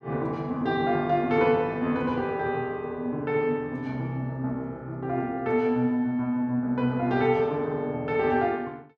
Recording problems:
none

